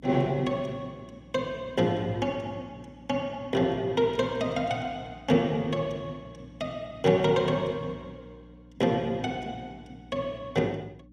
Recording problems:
hum; 60 Hz, harmonics up to 300 Hz, SNR 23 dB

